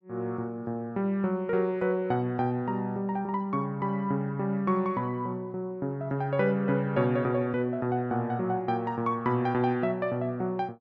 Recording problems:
none

